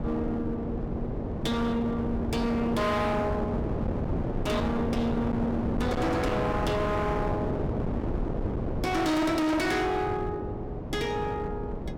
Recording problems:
distorted audio; hard clipping, signal-to-distortion ratio 6 dB
wind noise; below 450 Hz, SNR 3 dB

